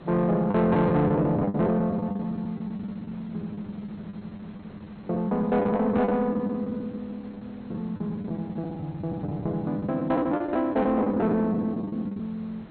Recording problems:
lossy compression; MP2, log-spectral distance 2 dB, nothing above 4.2 kHz
distortion; soft clipping, signal-to-distortion ratio 11 dB
hiss; SNR 21 dB
packet loss; 16% of the sound replaced, filled with the last packet

